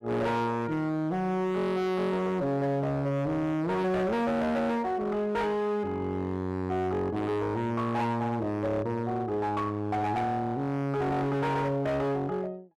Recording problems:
distorted audio; hard clipping, uneven, signal-to-distortion ratio 6 dB

